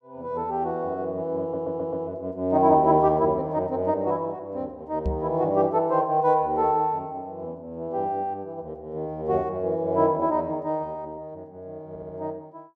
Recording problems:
stutter; at 1.5 s and at 12 s
microphone bump; at 5 s; peak +1 dB vs average level

